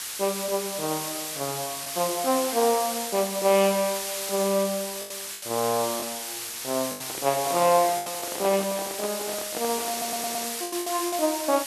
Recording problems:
hiss; slope +3 dB per octave, SNR 4 dB
packet loss; 5% of the sound replaced, filled with the last packet
handling noise; from 7 to 11 s; peak -4 dB vs average level
stutter; at 10 s

